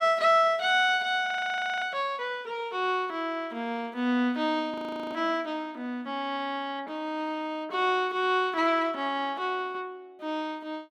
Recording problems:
audio freezing; at 1.5 s for 0.5 s and at 4.5 s

